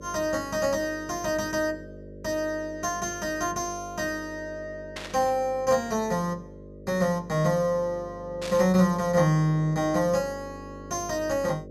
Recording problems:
electrical hum; 50 Hz, harmonics up to 600 Hz, SNR 17 dB
static burst; at 5 s and at 8.5 s; peak -5 dB vs average level

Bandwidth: 14.5 kHz